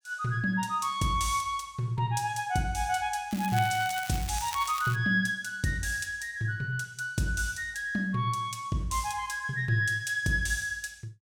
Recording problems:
crackling; from 3.5 to 5 s; loose cable, SNR 11 dB

